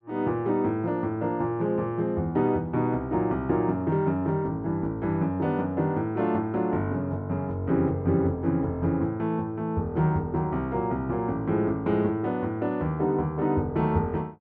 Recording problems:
none

